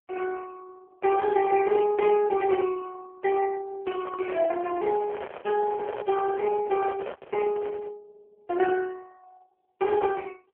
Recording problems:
phone line; 320 Hz to 2.9 kHz, AMR-NB
handling noise; from 4 to 8 s; peak -3 dB vs average level

